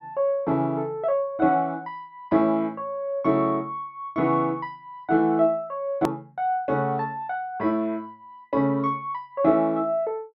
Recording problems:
edit click; at 6 s

